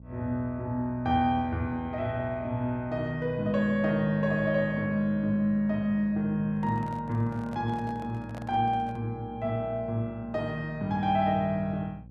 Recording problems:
mains hum; 60 Hz, harmonics up to 540 Hz, SNR 19 dB
microphone handling noise; from 6.5 to 9 s; peak -11 dB vs average level

